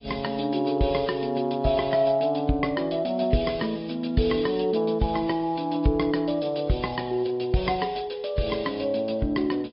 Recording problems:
low-pass filter; nothing above 5.2 kHz
codec artefacts; AAC, log-spectral distance 3 dB

